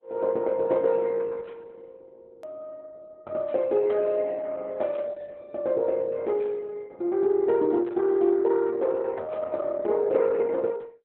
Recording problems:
lossy codec; Opus, log-spectral distance 2 dB
click at an edit; at 2.5 s

